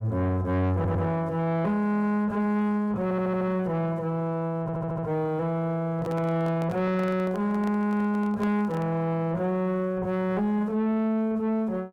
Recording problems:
distorted audio; soft clipping, signal-to-distortion ratio 10 dB
stutter; at 1 s, at 3 s and at 4.5 s
handling noise; from 6 to 9 s; peak -7 dB vs average level

